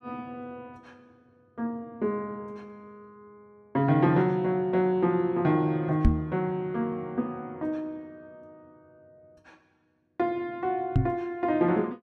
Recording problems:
microphone bump; at 6 s and at 11 s; peak +9 dB vs average level

